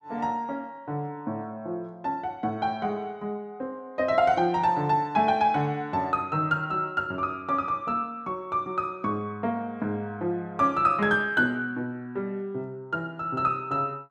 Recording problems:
none

